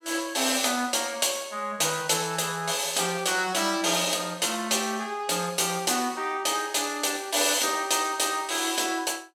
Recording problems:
none

